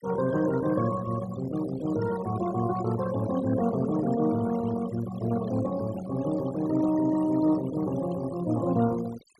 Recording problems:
denoising artefacts; signal-to-artefact ratio 15 dB

